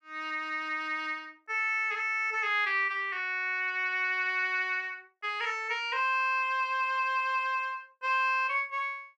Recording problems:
none

